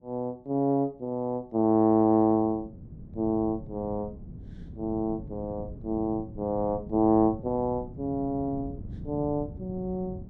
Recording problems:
wind on the microphone; below 200 Hz, SNR 15 dB

